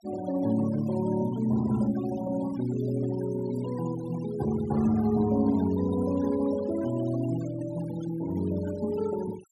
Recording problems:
denoising artefacts; signal-to-artefact ratio 17 dB

